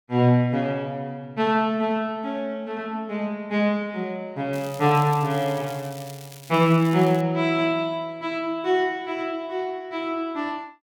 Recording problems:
crackling; from 4.5 to 7 s; loose cable, SNR 19 dB

